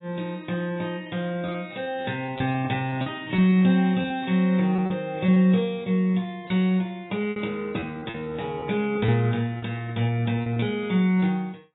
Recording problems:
lossy compression; AAC, log-spectral distance 3 dB, nothing above 3.8 kHz
packet loss; 7% of the sound replaced, filled with repeated pitch periods

